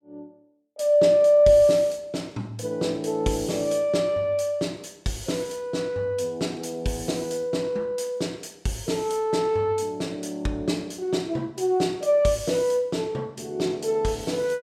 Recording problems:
none

